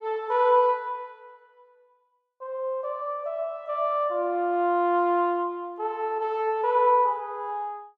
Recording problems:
none

